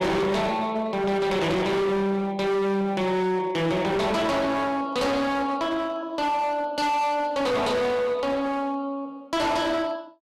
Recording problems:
distortion; hard clipping, signal-to-distortion ratio 7 dB

